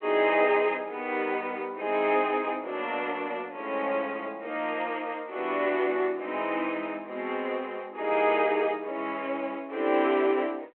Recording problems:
phone line; 300 Hz to 3.3 kHz, G.726

